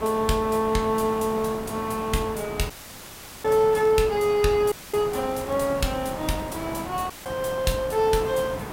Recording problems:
hiss; SNR 11 dB
dropout; at 2.5 s for 0.5 s, at 4.5 s and at 7 s; filled with static
crackling; at 3.5 s and from 5 to 7 s; loose cable, SNR 28 dB

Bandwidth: 16 kHz